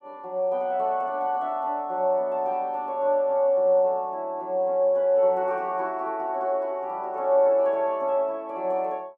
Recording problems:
none

